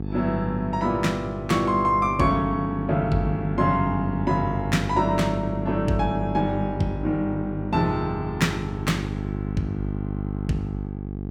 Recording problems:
mains hum; 50 Hz, harmonics up to 800 Hz, SNR 6 dB

